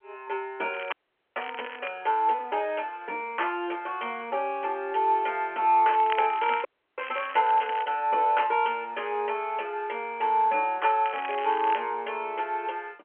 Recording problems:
telephone audio; 280 Hz to 3.3 kHz, G.711
crackling; from 0.5 to 2 s, from 6 to 8 s and at 11 s; loose cable, SNR 14 dB
audio freezing; at 1 s and at 6.5 s

